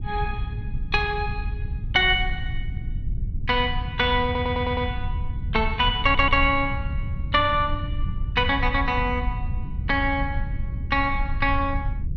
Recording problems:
rumble; below 94 Hz, SNR 7 dB
stutter; at 4.5 s and at 6 s

